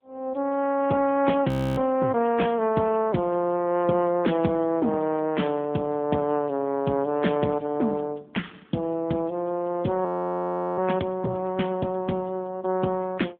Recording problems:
phone line; 130 Hz to 3.4 kHz, AMR-NB
audio freezing; at 1.5 s and at 10 s for 0.5 s

